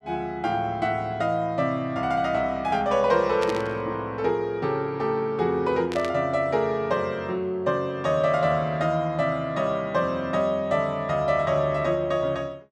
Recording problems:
static burst; at 3.5 s and at 6 s; peak -5 dB vs average level

